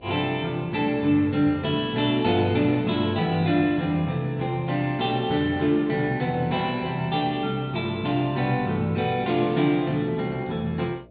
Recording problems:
treble cut off; nothing above 4.5 kHz
hum; 60 Hz, harmonics up to 660 Hz, SNR 28 dB

